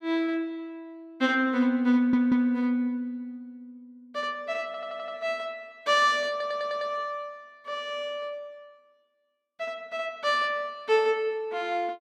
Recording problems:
audio stuttering; at 2 s, at 4.5 s and at 6.5 s

